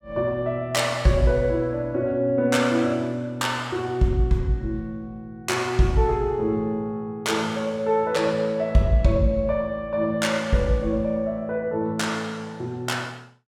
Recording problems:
none

